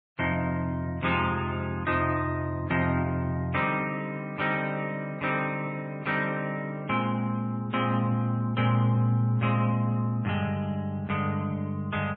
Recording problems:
lossy codec; MP3, log-spectral distance 2 dB

